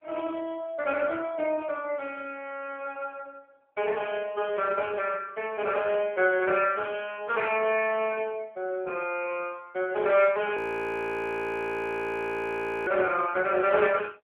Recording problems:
phone line; 300 Hz to 3.3 kHz, AMR-NB
frozen audio; at 11 s for 2.5 s

